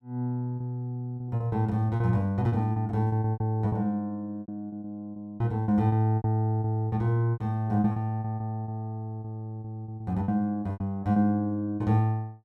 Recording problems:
packet loss; 13% of the sound replaced, filled with repeated pitch periods

